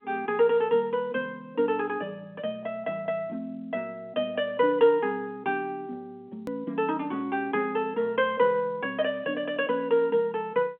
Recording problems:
telephone audio; 240 Hz to 3.5 kHz, G.711
click at an edit; at 6.5 s

